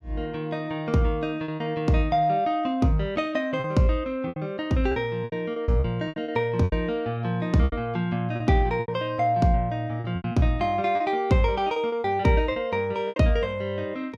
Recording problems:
lost packets; 9% of the sound replaced, filled with repeated pitch periods

